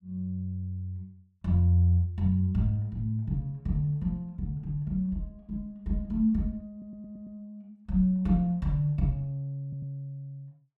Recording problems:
audio stuttering; at 6.5 s and at 9.5 s

